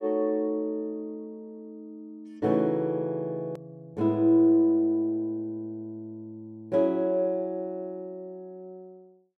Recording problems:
hard cut with a click; at 3.5 s

